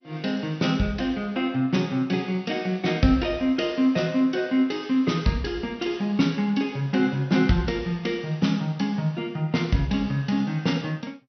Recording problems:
lossy compression; MP2, log-spectral distance 2 dB, nothing above 6 kHz

